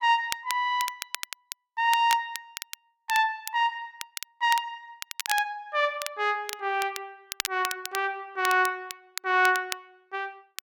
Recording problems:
crackle; vinyl, SNR 10 dB

